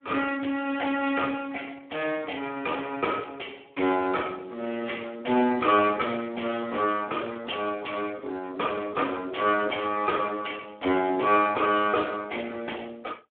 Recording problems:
phone line; 260 Hz to 3.5 kHz, Speex

